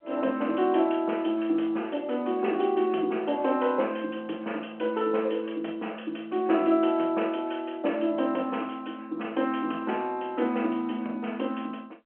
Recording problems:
phone line; 260 Hz to 3.1 kHz, G.711

